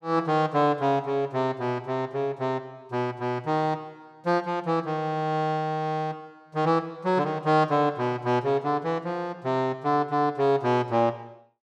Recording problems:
none

